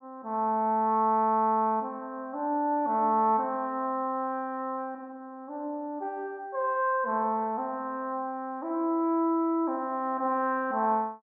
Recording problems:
none

